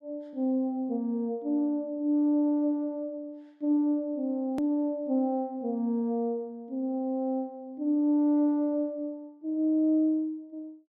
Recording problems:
hard cut with a click; at 4.5 s

